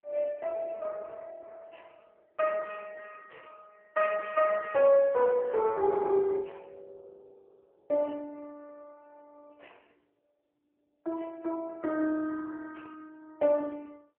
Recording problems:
telephone audio; 280 Hz to 3.1 kHz, AMR-NB

